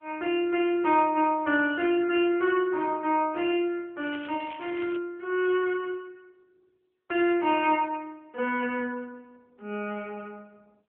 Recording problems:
phone line; 260 Hz to 3.2 kHz, AMR-NB
crackle; at 4 s; loose cable, SNR 18 dB

